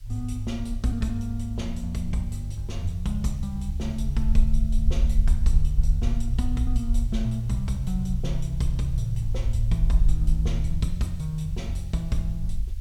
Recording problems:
background hiss; SNR 27 dB
low-frequency rumble; below 56 Hz, SNR 0 dB

